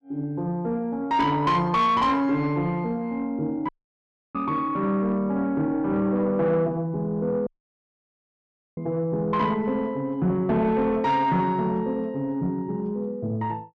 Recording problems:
distortion; soft clipping, signal-to-distortion ratio 11 dB
audio cutting out; at 3.5 s for 0.5 s and at 7.5 s for 1.5 s

